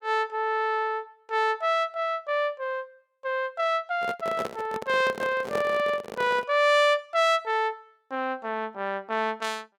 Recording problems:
handling noise; from 4 to 6.5 s; peak -1 dB vs average level

